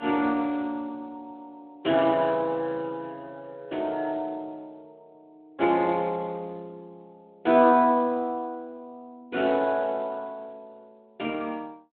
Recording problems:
phone line; 190 Hz to 3.7 kHz, Speex

